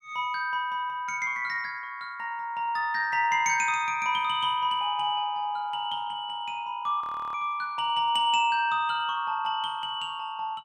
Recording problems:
audio freezing; at 7 s

